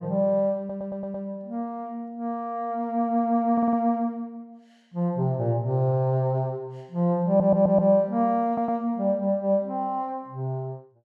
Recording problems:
stutter; 4 times, first at 0.5 s

